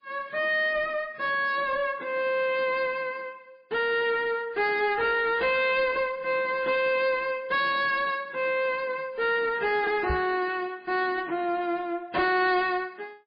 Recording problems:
lossy codec; MP3, log-spectral distance 2 dB, nothing above 4.5 kHz
distorted audio; soft clipping, signal-to-distortion ratio 10 dB
microphone bump; at 10 s; peak 0 dB vs average level

